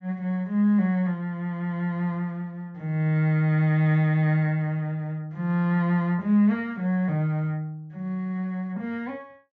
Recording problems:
treble missing; nothing above 8 kHz

